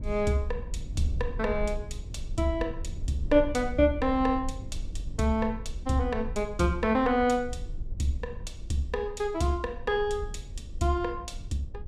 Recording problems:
low-frequency rumble; below 66 Hz, SNR 10 dB

